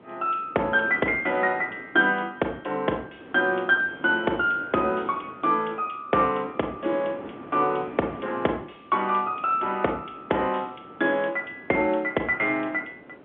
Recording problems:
telephone audio; 260 Hz to 3.8 kHz, G.711
wind noise; below 750 Hz, SNR 18 dB

